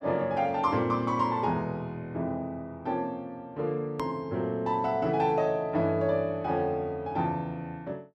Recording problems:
click at an edit; at 4 s

